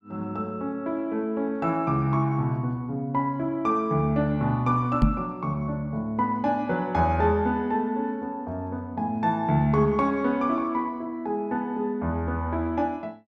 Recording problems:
knock on the microphone; at 5 s; peak +9 dB vs average level

